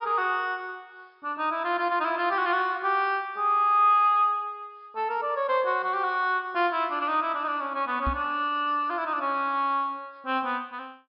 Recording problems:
low-pass filter; nothing above 5.5 kHz
microphone bump; at 8 s; peak -2 dB vs average level

